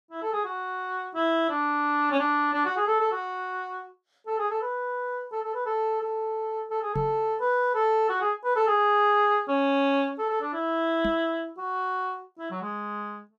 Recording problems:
microphone bump; at 7 s and at 11 s; peak -2 dB vs average level

